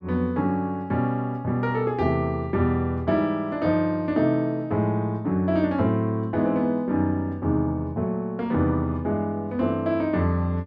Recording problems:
none

